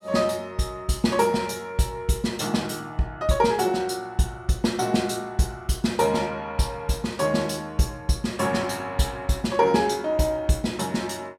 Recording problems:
none

